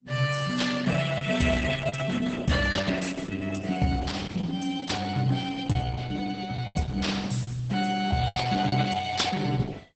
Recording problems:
lossy compression; Opus, then Opus, log-spectral distance 6 dB, nothing above 8.2 kHz
packet loss; 4% of the sound replaced, filled with the last packet

